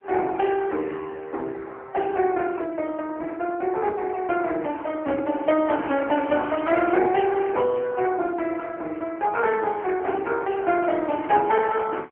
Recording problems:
phone line; 280 Hz to 3 kHz, AMR-NB

